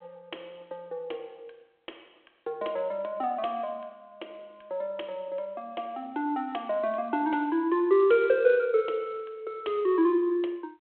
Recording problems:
phone line; 300 Hz to 3.3 kHz, G.726

